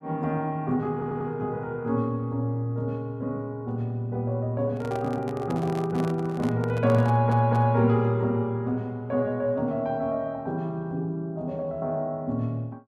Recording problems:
audio stuttering; at 1 s and at 7 s
microphone handling noise; from 4.5 to 7.5 s; peak -6 dB vs average level

